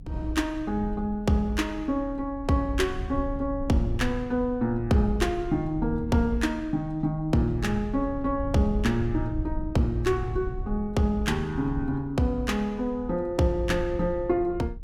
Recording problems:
low-frequency rumble; below 88 Hz, SNR 11 dB

